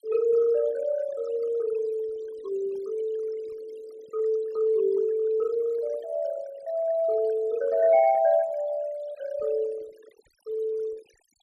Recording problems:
noise reduction artefacts; signal-to-artefact ratio 22 dB

